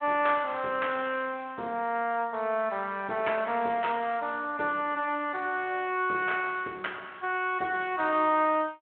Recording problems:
telephone audio; 240 Hz to 3.3 kHz, Speex

